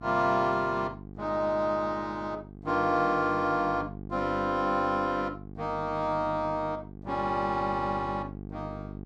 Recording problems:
mains hum; 50 Hz, harmonics up to 850 Hz, SNR 14 dB

